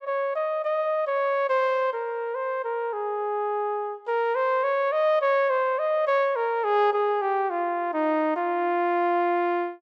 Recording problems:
none

